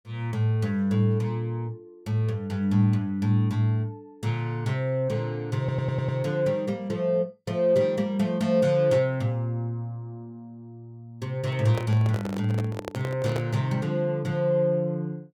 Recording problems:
audio stuttering; at 5.5 s
handling noise; from 11 to 13 s; peak -3 dB vs average level

